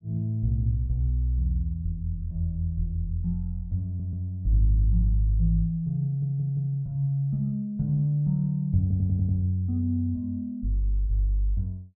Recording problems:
audio stuttering; at 4 s, at 6 s and at 9 s

